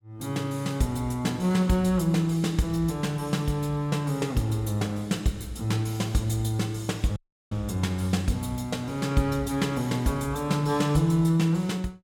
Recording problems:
dropout; at 7 s

